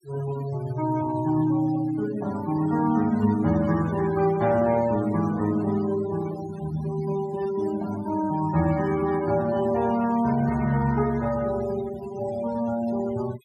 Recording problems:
noise reduction artefacts; signal-to-artefact ratio 16 dB

